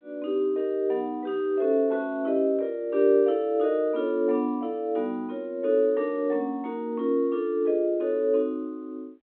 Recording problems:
phone line; 260 Hz to 3.6 kHz, G.726

